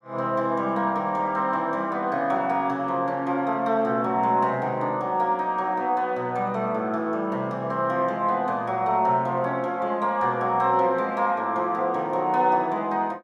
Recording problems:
none

